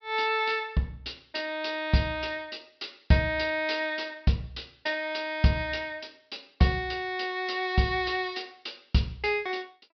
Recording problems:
treble cut off; nothing above 5.5 kHz

